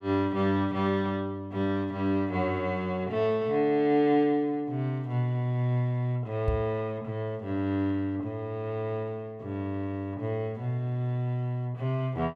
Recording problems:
microphone bump; at 6.5 s; peak +3 dB vs average level

